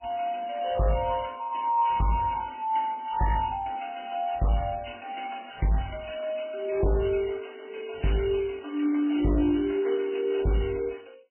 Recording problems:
lossy codec; MP3, then MP3, log-spectral distance 13 dB, nothing above 2.9 kHz
distortion; hard clipping, signal-to-distortion ratio 11 dB

